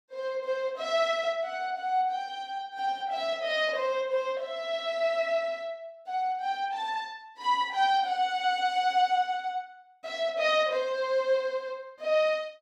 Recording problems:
none

